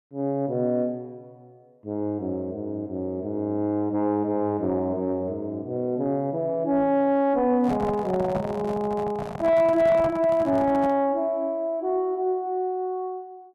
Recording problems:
distortion; soft clipping, signal-to-distortion ratio 11 dB
handling noise; from 7.5 to 11 s; peak -1 dB vs average level

